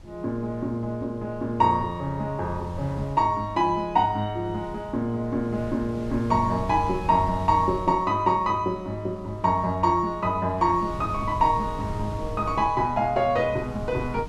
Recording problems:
wind on the microphone; below 160 Hz, SNR 15 dB

